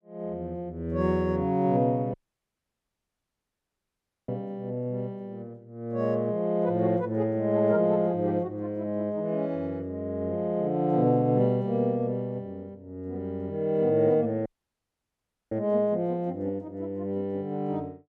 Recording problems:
dropout; at 2 s for 2 s and at 14 s for 1 s

